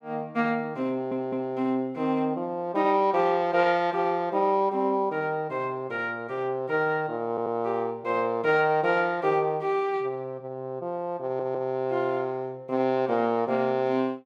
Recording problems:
audio stuttering; at 1 s, at 7.5 s and at 11 s

